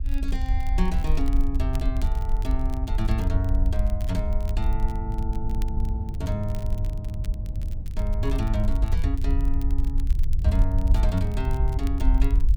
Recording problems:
rumble; below 60 Hz, SNR -5 dB
wind noise; below 120 Hz, SNR 7 dB
crackle; vinyl, SNR 19 dB

